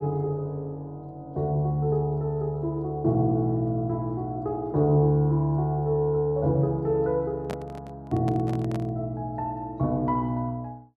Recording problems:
microphone handling noise; from 7.5 to 9 s; peak -5 dB vs average level

